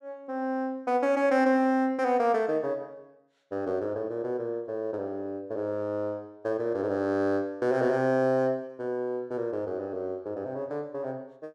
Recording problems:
none

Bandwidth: 12.5 kHz